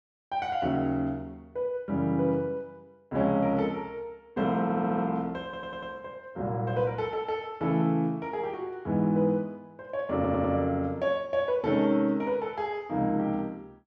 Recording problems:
audio stuttering; at 4.5 s, at 5.5 s and at 10 s

